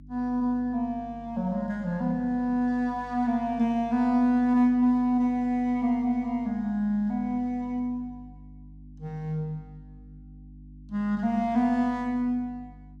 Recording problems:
electrical hum; 50 Hz, harmonics up to 300 Hz, SNR 22 dB

